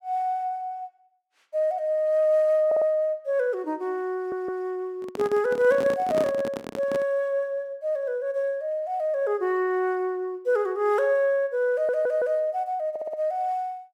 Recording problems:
stutter; 4 times, first at 2.5 s
handling noise; from 5 to 7 s; peak -2 dB vs average level

